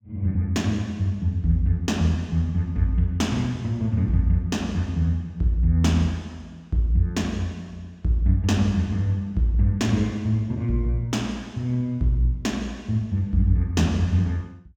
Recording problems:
none

